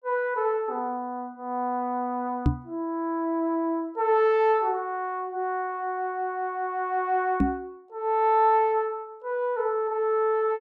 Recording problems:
microphone thump; at 2.5 s and at 7.5 s; peak +7 dB vs average level

